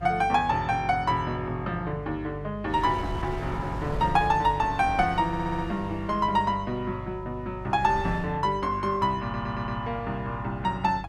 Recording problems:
mains hum; 50 Hz, harmonics up to 350 Hz, SNR 15 dB
wind on the microphone; below 410 Hz, SNR 11 dB
audio stuttering; at 5.5 s and at 9 s

